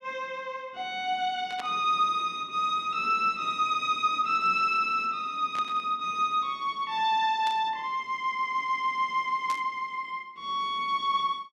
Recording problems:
burst of static; 4 times, first at 1.5 s; peak -8 dB vs average level

